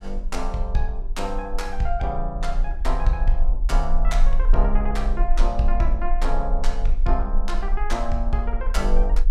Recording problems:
rumble; below 36 Hz, strongest tone 24 Hz, SNR -2 dB

